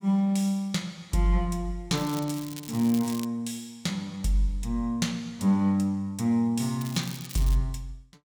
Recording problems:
crackling; from 2 to 3.5 s and at 7 s; loose cable, SNR 14 dB

